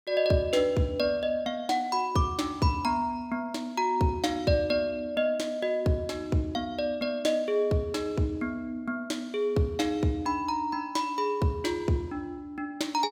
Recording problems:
none

